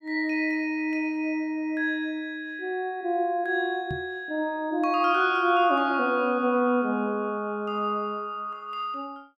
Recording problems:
microphone bump; at 4 s; peak -4 dB vs average level

